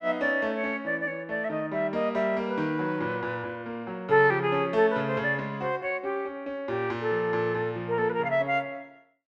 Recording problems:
none

